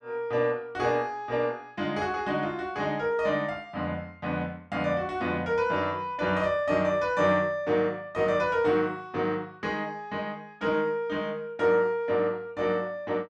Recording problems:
none

